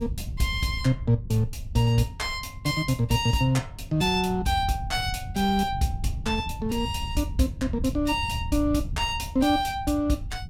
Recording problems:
wind on the microphone; below 110 Hz, SNR 10 dB

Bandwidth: 17 kHz